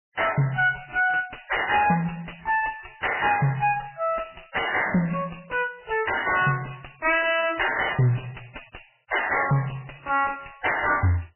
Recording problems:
codec artefacts; MP3, log-spectral distance 13 dB, nothing above 3 kHz
distortion; soft clipping, signal-to-distortion ratio 7 dB

